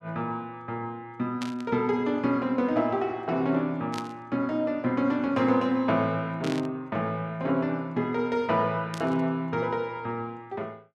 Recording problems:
burst of static; 4 times, first at 1.5 s; peak -5 dB vs average level

